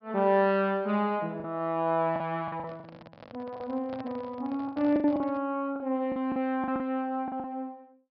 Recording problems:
treble cut off; nothing above 5.5 kHz
packet loss; 10% of the sound replaced, filled with the last packet
microphone handling noise; from 2.5 to 5.5 s; peak -9 dB vs average level

